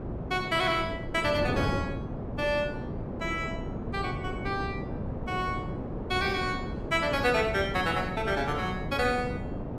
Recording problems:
electrical hum; 60 Hz, harmonics up to 960 Hz, SNR 18 dB
wind on the microphone; below 430 Hz, SNR 6 dB

